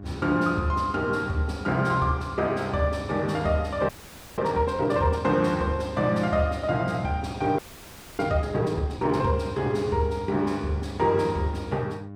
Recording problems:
electrical hum; 50 Hz, harmonics up to 1.1 kHz, SNR 15 dB
audio freezing; at 4 s and at 7.5 s for 0.5 s

